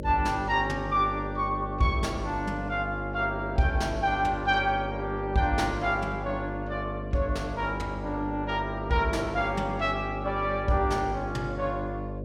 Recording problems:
electrical hum; 50 Hz, harmonics up to 600 Hz, SNR 7 dB

